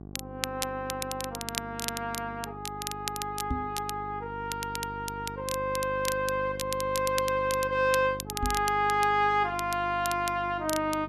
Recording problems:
hum; 50 Hz, harmonics up to 1.1 kHz, SNR 13 dB
crackling; vinyl, SNR 8 dB
microphone bump; at 3.5 s and at 8.5 s; peak +2 dB vs average level

